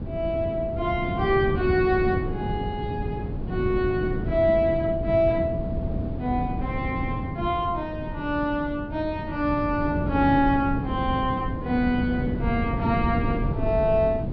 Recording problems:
treble cut off; nothing above 5.5 kHz
wind noise; below 240 Hz, SNR 5 dB

